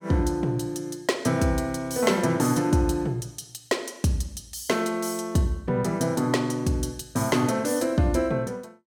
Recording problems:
none

